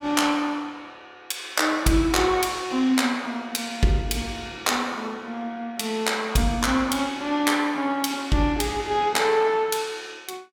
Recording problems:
none

